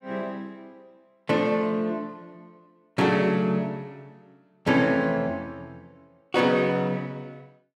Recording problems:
none

